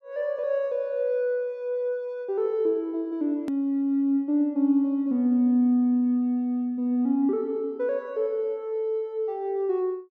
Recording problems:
hard cut with a click; at 3.5 s

